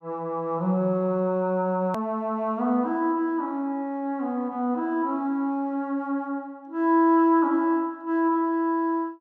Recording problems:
click at an edit; at 2 s

